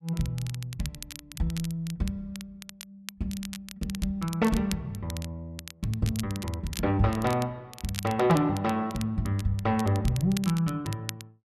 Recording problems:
crackling; vinyl, SNR 14 dB

